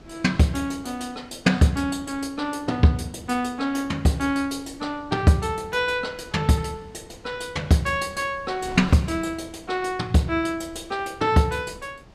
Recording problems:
wind on the microphone; below 520 Hz, SNR 23 dB

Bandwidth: 14.5 kHz